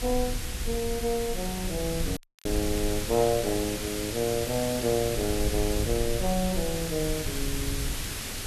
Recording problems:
background hiss; SNR 4 dB
rumble; below 70 Hz, SNR 8 dB
crackle; vinyl, SNR 27 dB
audio cutting out; at 2 s

